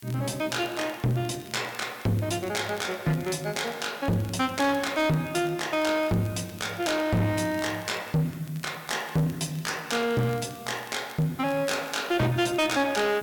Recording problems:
distorted audio; soft clipping, signal-to-distortion ratio 8 dB
hiss; slope +1 dB per octave, SNR 22 dB
crackling; vinyl, SNR 24 dB

